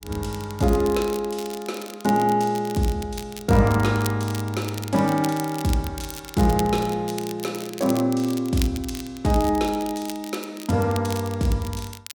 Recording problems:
crackling; vinyl, SNR 14 dB

